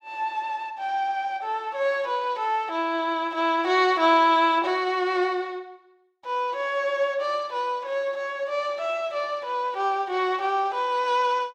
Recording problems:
none

